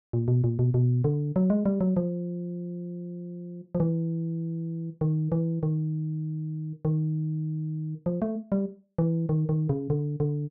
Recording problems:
none

